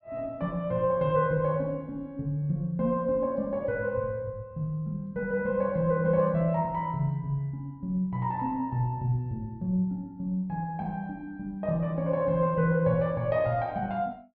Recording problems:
low-pass filter; nothing above 5.5 kHz

